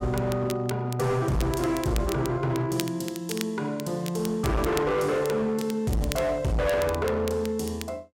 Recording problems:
distortion; hard clipping, signal-to-distortion ratio 7 dB
crackle; vinyl, SNR 14 dB

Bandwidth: 16 kHz